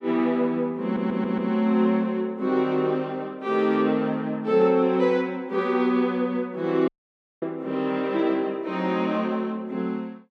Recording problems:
stutter; at 1 s
dropout; at 7 s for 0.5 s

